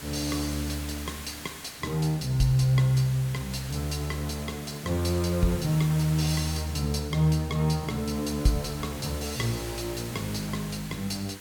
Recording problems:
hiss; slope -1 dB per octave, SNR 13 dB

